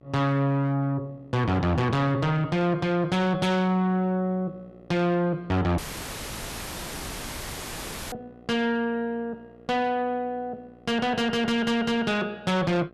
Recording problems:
distorted audio; soft clipping, signal-to-distortion ratio 6 dB
mains hum; 60 Hz, harmonics up to 1.4 kHz, SNR 27 dB
dropout; at 6 s for 2.5 s; filled with static

